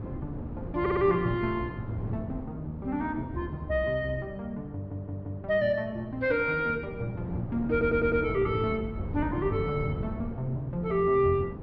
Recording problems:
treble missing; nothing above 5.5 kHz
wind on the microphone; below 270 Hz, SNR 9 dB
audio stuttering; at 1 s, at 4.5 s and at 7.5 s

